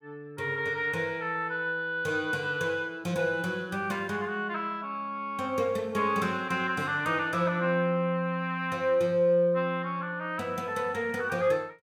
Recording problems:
none

